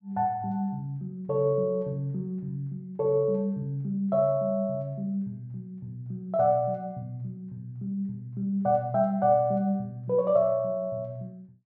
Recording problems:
none

